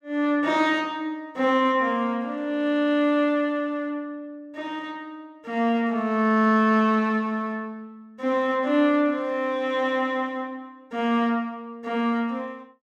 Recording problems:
none

